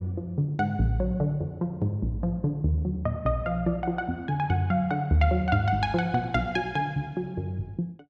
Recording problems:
none

